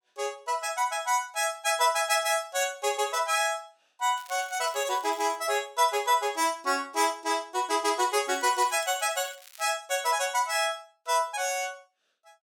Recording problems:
crackling; from 4 to 5.5 s and from 8.5 to 9.5 s; loose cable, SNR 22 dB

